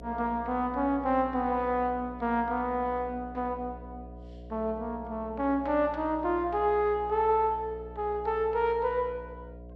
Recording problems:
hum; 60 Hz, harmonics up to 720 Hz, SNR 16 dB

